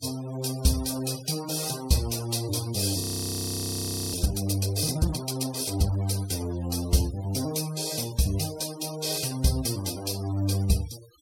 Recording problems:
denoising artefacts; signal-to-artefact ratio 16 dB
audio freezing; at 3 s for 1 s

